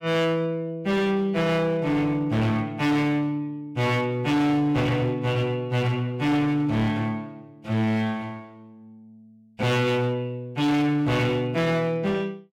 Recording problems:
distortion; hard clipping, uneven, signal-to-distortion ratio 8 dB

